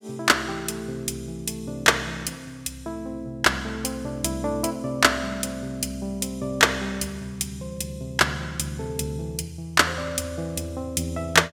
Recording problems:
none

